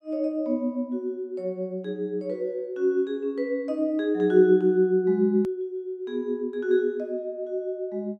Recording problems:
click at an edit; at 5.5 s

